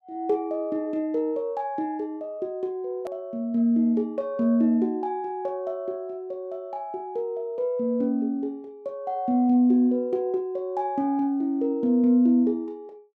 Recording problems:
hard cut with a click; at 3 s

